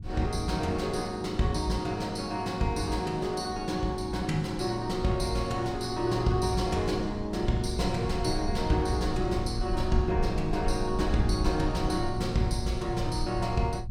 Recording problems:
low-frequency rumble; below 78 Hz, SNR 9 dB

